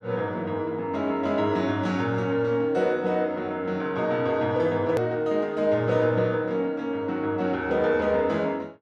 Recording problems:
hard cut with a click; at 5 s

